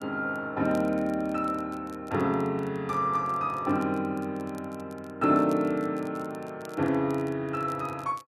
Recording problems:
crackle; vinyl, SNR 27 dB

